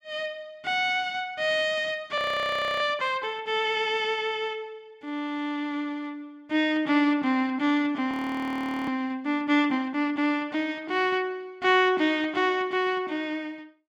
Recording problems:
frozen audio; at 2 s for 0.5 s and at 8 s for 1 s

